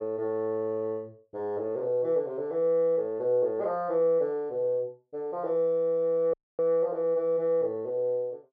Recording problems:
audio cutting out; at 6.5 s

